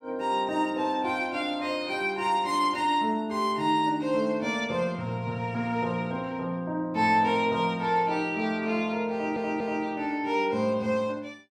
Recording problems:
stutter; at 9 s

